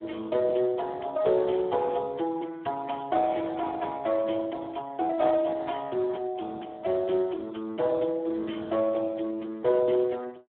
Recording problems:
phone line; 240 Hz to 2.2 kHz, Speex

